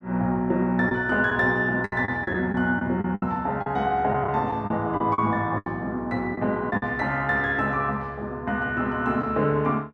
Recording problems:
lost packets; 7% of the sound replaced, filled with the last packet

